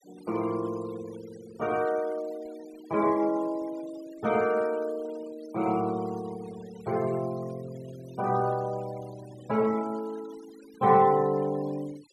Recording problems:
noise reduction artefacts; signal-to-artefact ratio 22 dB

